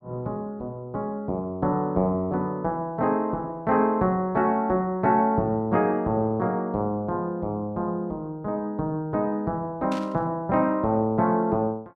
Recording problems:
static burst; at 10 s; peak -9 dB vs average level

